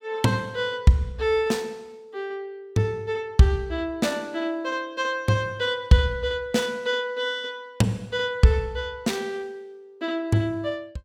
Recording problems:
none

